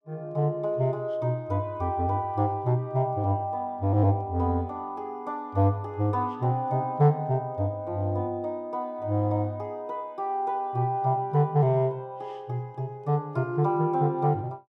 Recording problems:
none

